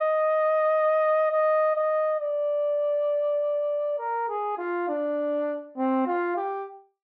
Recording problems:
none

